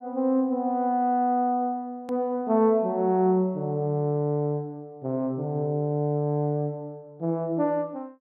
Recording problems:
edit click; at 2 s

